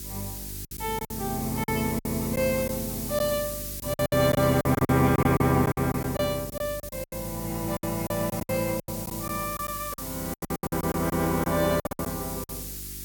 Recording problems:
hum; 50 Hz, harmonics up to 400 Hz, SNR 15 dB
hiss; SNR 8 dB
packet loss; 14% of the sound replaced, filled with silence

